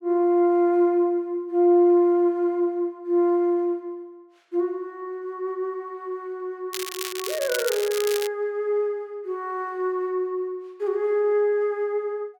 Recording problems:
crackling; from 6.5 to 8.5 s; loose cable, SNR 8 dB

